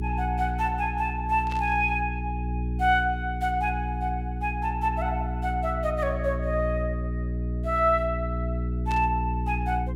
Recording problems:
electrical hum; 60 Hz, harmonics up to 420 Hz, SNR 4 dB
burst of static; at 1.5 s and at 9 s; peak -9 dB vs average level

